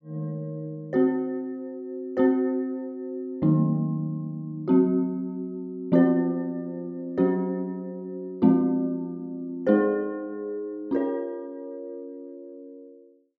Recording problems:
none

